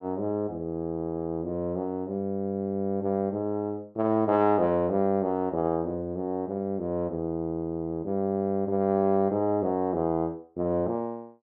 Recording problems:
none

